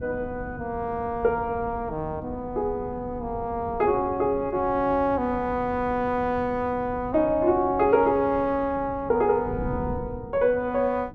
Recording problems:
wind on the microphone; below 230 Hz, SNR 14 dB

